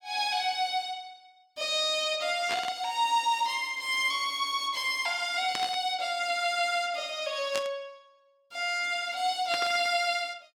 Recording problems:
burst of static; 4 times, first at 2.5 s; peak -1 dB vs average level

